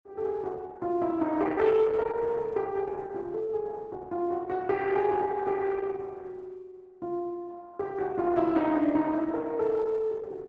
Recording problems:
lossy codec; Opus, log-spectral distance 3 dB

